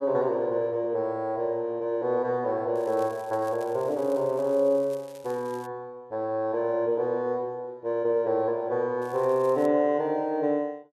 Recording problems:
crackle; from 3 to 5.5 s and at 9 s; loose cable, SNR 26 dB

